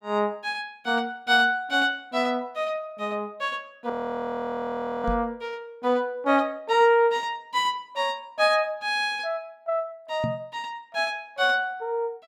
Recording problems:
audio freezing; at 4 s for 1 s
microphone thump; at 5 s and at 10 s; peak -1 dB vs average level

